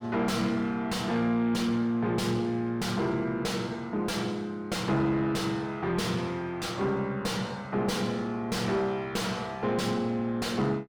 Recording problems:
distorted audio; soft clipping, signal-to-distortion ratio 5 dB

